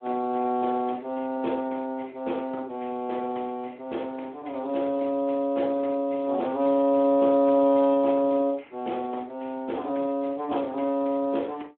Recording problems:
telephone audio; 220 Hz to 3.3 kHz, Speex

